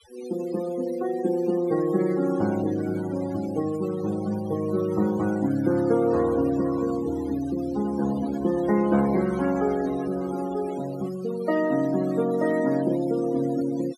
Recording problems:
noise reduction artefacts; signal-to-artefact ratio 16 dB

